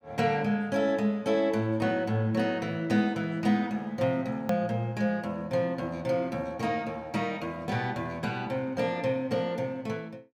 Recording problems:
hard cut with a click; at 4.5 s

